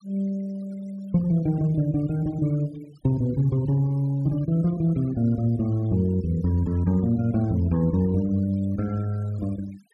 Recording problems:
noise reduction artefacts; signal-to-artefact ratio 26 dB

